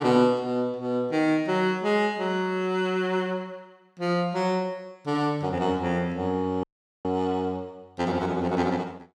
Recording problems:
audio cutting out; at 6.5 s

